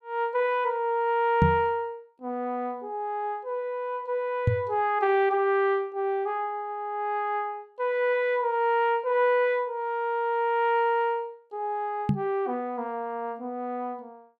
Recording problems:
microphone thump; at 1.5 s, at 4.5 s and at 12 s; peak +8 dB vs average level

